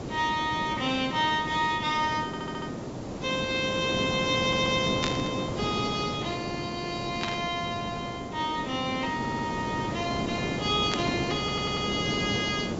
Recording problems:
treble cut off; nothing above 8 kHz
hiss; SNR 5 dB
audio stuttering; 4 times, first at 2.5 s
burst of static; at 5 s, at 7 s and at 11 s; peak +3 dB vs average level

